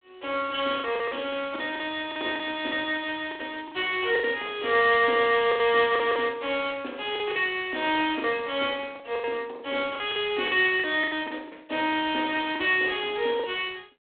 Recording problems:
phone line; 260 Hz to 3.7 kHz, G.726
packet loss; 10% of the sound replaced, filled with the last packet

